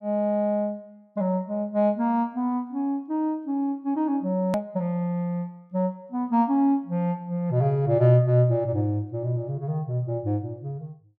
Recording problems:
click at an edit; at 4.5 s

